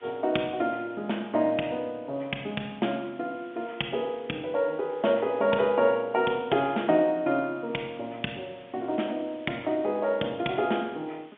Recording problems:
phone line; 150 Hz to 3.5 kHz, G.711
background hiss; SNR 27 dB

